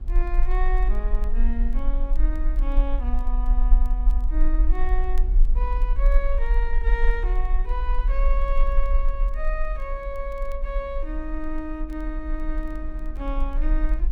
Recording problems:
electrical hum; 60 Hz, harmonics up to 840 Hz, SNR 21 dB
low-frequency rumble; below 40 Hz, SNR -8 dB
wind noise; below 120 Hz, SNR 13 dB
crackle; vinyl, SNR 29 dB

